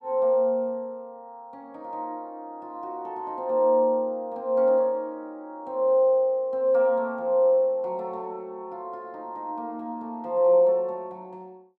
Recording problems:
none

